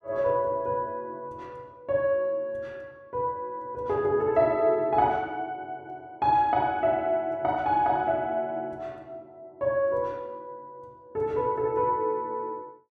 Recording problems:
none

